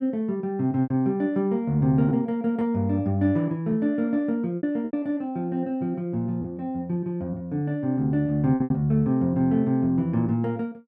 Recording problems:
lost packets; 4% of the sound replaced, filled with repeated pitch periods

